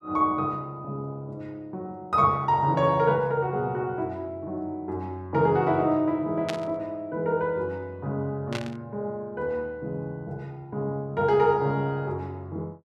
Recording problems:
burst of static; at 6.5 s and at 8.5 s; peak -2 dB vs average level

